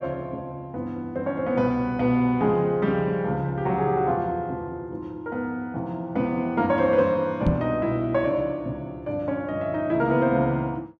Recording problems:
microphone thump; at 7.5 s; peak +6 dB vs average level

